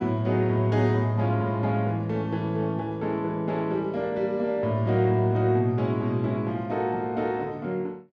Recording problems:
none

